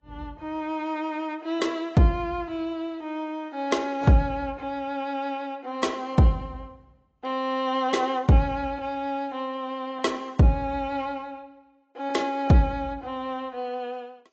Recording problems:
lossy compression; AAC, log-spectral distance 2 dB

